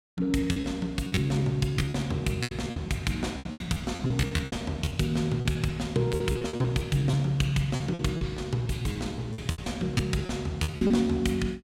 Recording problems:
packet loss; 16% of the sound replaced, filled with repeated pitch periods

